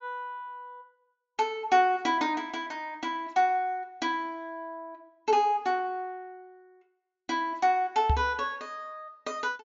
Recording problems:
treble cut off; nothing above 7.4 kHz
knock on the microphone; at 8 s; peak +6 dB vs average level

